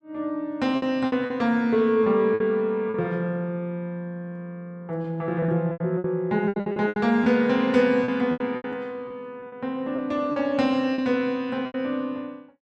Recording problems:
lost packets; 10% of the sound replaced, filled with repeated pitch periods

